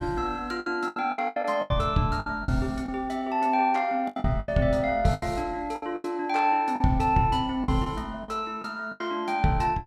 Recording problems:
lost packets; 12% of the sound replaced, filled with the last packet

